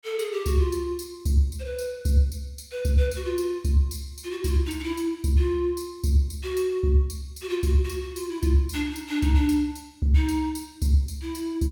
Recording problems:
none

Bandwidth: 17.5 kHz